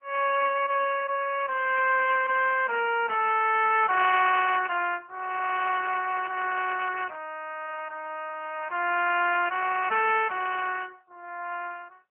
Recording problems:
telephone audio; 390 Hz to 3 kHz, AMR-NB

